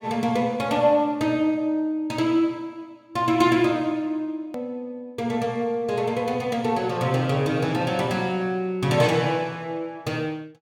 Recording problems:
edit click; at 4.5 s

